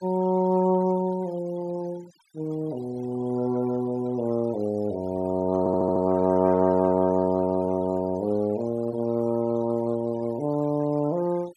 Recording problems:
noise reduction artefacts; signal-to-artefact ratio 23 dB
audio stuttering; at 5.5 s

